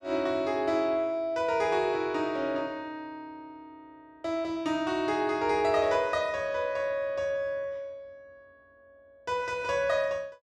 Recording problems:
none

